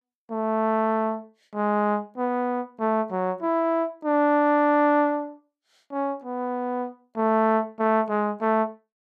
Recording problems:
none

